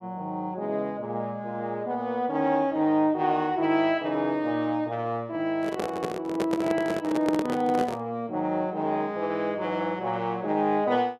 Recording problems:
handling noise; from 5.5 to 8 s; peak +2 dB vs average level

